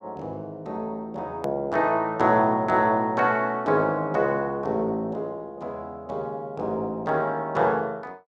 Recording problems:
hard cut with a click; at 1.5 s

